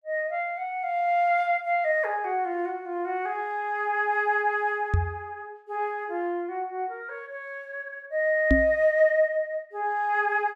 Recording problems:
knock on the microphone; at 5 s and at 8.5 s; peak +7 dB vs average level

